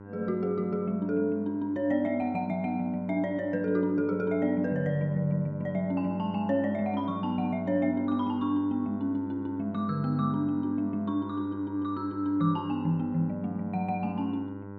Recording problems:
electrical hum; 50 Hz, harmonics up to 1.6 kHz, SNR 13 dB

